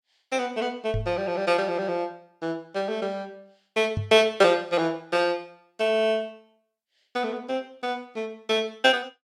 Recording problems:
microphone thump; at 1 s and at 4 s; peak 0 dB vs average level

